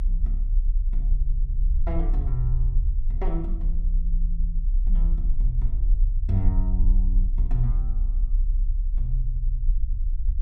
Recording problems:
low-frequency rumble; below 40 Hz, strongest tone 32 Hz, SNR -8 dB

